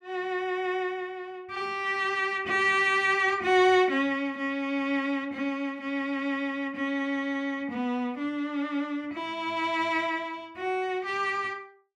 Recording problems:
none

